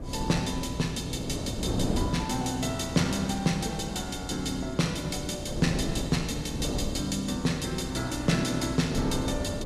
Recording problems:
electrical hum; 60 Hz, harmonics up to 720 Hz, SNR 15 dB
hiss; SNR 30 dB
wind noise; below 360 Hz, SNR 6 dB

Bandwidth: 15 kHz